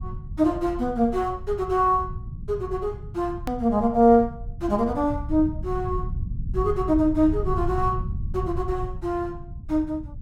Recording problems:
rumble; below 110 Hz, SNR 10 dB
edit click; at 3.5 s

